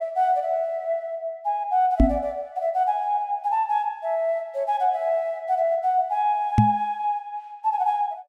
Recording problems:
microphone thump; at 2 s and at 6.5 s; peak +10 dB vs average level

